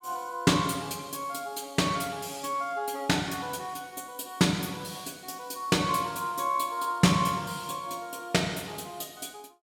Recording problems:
none

